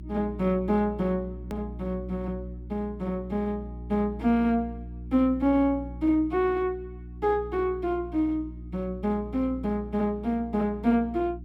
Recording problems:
hum; 60 Hz, harmonics up to 360 Hz, SNR 13 dB
click at an edit; at 1.5 s

